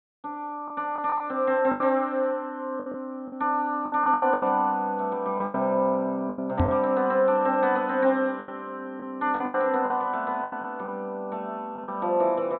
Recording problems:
low-pass filter; nothing above 4 kHz
lost packets; 9% of the sound replaced, filled with the last packet
knock on the microphone; at 6.5 s; peak +6 dB vs average level

